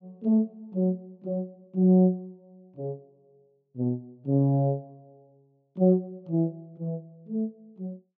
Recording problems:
low-pass filter; nothing above 8 kHz

